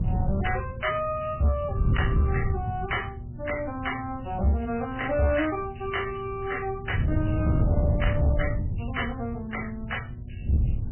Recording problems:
lossy compression; MP3, log-spectral distance 4 dB, nothing above 3 kHz
distorted audio; soft clipping, signal-to-distortion ratio 12 dB
electrical hum; 60 Hz, harmonics up to 600 Hz, SNR 16 dB
wind on the microphone; below 140 Hz, SNR 1 dB

